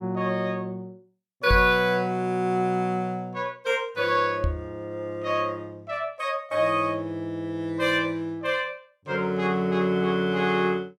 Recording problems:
knock on the microphone; at 1.5 s and at 4.5 s; peak +4 dB vs average level

